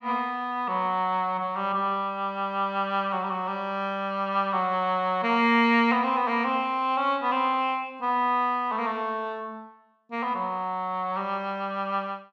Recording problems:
none

